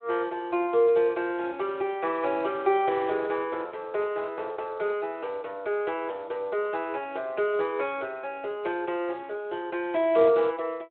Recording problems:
telephone audio; 300 Hz to 3.5 kHz, Speex

